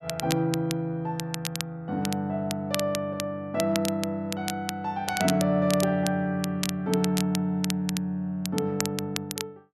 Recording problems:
crackling; vinyl, SNR 8 dB

